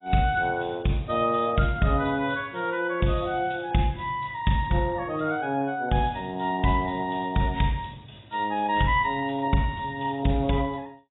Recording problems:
lossy compression; AAC, log-spectral distance 5 dB, nothing above 3.8 kHz

